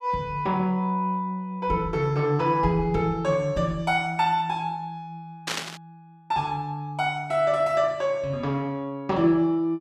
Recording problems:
static burst; at 5.5 s; peak +1 dB vs average level

